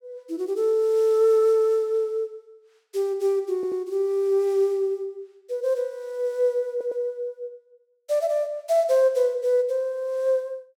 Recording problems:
stutter; at 3.5 s and at 6.5 s

